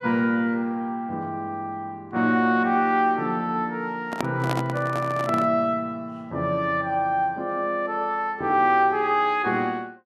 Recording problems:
microphone handling noise; from 4 to 5.5 s; peak +1 dB vs average level

